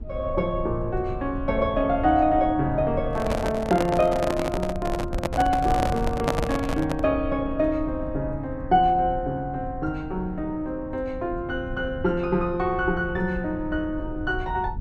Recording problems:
rumble; below 100 Hz, SNR 11 dB
handling noise; from 3 to 7 s; peak +5 dB vs average level

